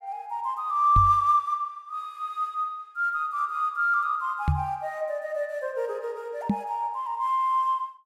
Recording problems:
microphone bump; at 1 s, at 4.5 s and at 6.5 s; peak +5 dB vs average level

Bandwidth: 16 kHz